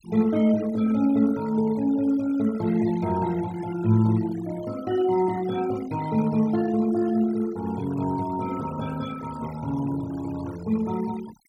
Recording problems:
noise reduction artefacts; signal-to-artefact ratio 19 dB

